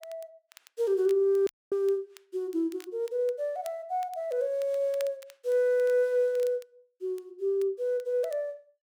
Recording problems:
crackle; vinyl, SNR 26 dB
audio cutting out; at 1.5 s

